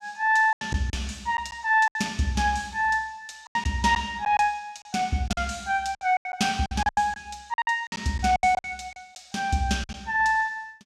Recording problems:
packet loss; 11% of the sound replaced, filled with silence

